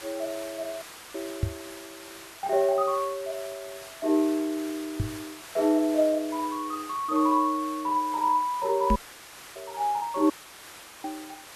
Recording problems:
background hiss; slope -1 dB per octave, SNR 16 dB
dropout; at 1 s, at 9 s for 0.5 s and at 10 s for 0.5 s
knock on the microphone; at 1.5 s, at 5 s and at 9 s; peak +4 dB vs average level

